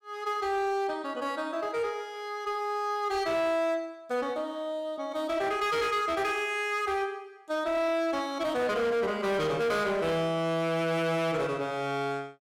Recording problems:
distortion; hard clipping, signal-to-distortion ratio 10 dB

